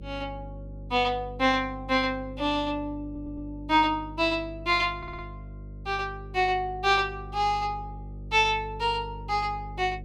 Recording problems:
hum; 50 Hz, harmonics up to 550 Hz, SNR 15 dB
audio stuttering; at 3 s and at 5 s

